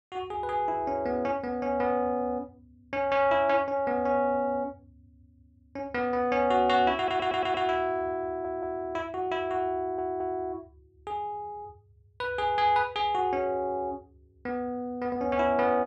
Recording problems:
audio stuttering; at 7 s, at 8.5 s and at 10 s

